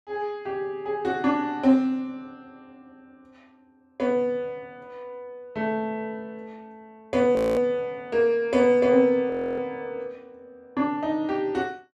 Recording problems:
frozen audio; at 7.5 s and at 9.5 s

